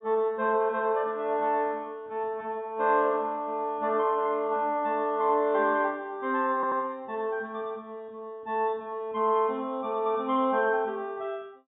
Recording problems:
treble missing; nothing above 4 kHz
audio stuttering; at 6.5 s

